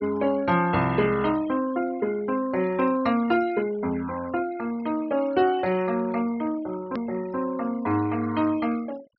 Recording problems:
treble cut off; nothing above 5.5 kHz
denoising artefacts; signal-to-artefact ratio 19 dB
hard cut with a click; at 7 s

